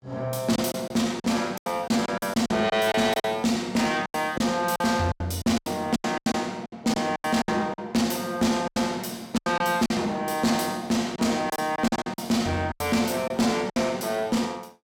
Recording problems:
distorted audio; soft clipping, signal-to-distortion ratio 11 dB
packet loss; 12% of the sound replaced, filled with silence

